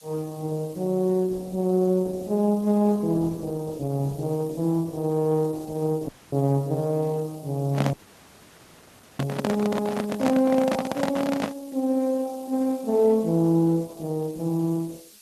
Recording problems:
lossy compression; AAC, then Opus, log-spectral distance 5 dB
background hiss; slope +4 dB per octave, SNR 24 dB
audio cutting out; at 6 s and at 8 s for 1.5 s
handling noise; from 7.5 to 12 s; peak +2 dB vs average level

